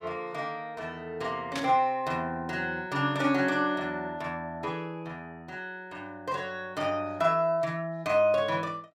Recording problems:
burst of static; at 1.5 s; peak -2 dB vs average level

